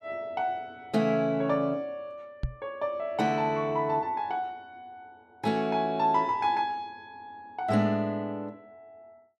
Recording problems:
microphone thump; at 2.5 s; peak +1 dB vs average level

